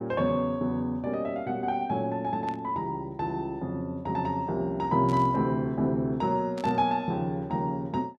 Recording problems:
static burst; at 2.5 s, at 5 s and at 6.5 s; peak -12 dB vs average level

